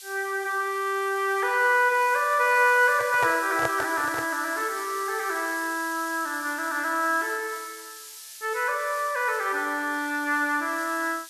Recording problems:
background hiss; slope +7 dB per octave, SNR 15 dB
handling noise; from 3 to 4.5 s; peak -1 dB vs average level

